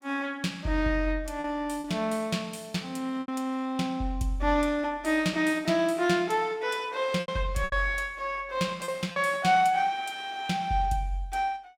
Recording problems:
lost packets; 3% of the sound replaced, filled with repeated pitch periods

